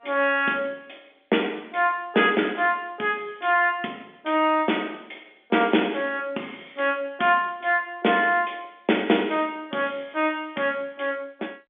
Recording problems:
telephone audio; 240 Hz to 3.6 kHz, G.711

